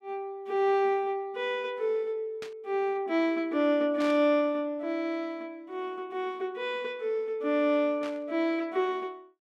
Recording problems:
static burst; at 2.5 s, at 4 s and at 8 s; peak -8 dB vs average level

